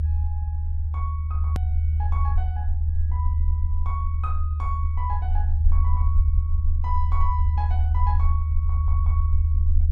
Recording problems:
low-frequency rumble; below 78 Hz, strongest tone 78 Hz, SNR -12 dB
click at an edit; at 1.5 s

